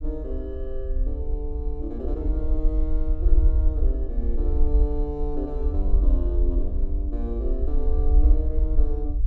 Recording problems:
rumble; below 56 Hz, SNR -8 dB

